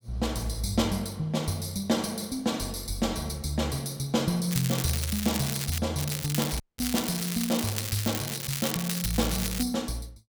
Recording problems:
crackling; from 4.5 to 6 s and from 6 to 9.5 s; loose cable, SNR 4 dB
dropout; at 6.5 s

